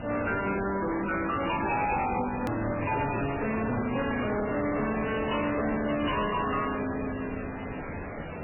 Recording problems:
lossy compression; MP3, then MP3, log-spectral distance 12 dB, nothing above 2.9 kHz
distortion; soft clipping, signal-to-distortion ratio 6 dB
hiss; SNR 8 dB
hard cut with a click; at 2.5 s

